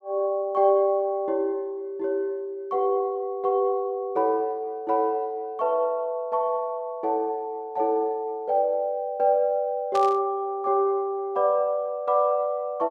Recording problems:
static burst; at 10 s; peak -9 dB vs average level

